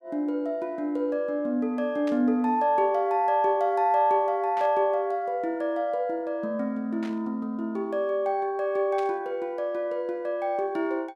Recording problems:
static burst; 4 times, first at 2 s; peak -13 dB vs average level

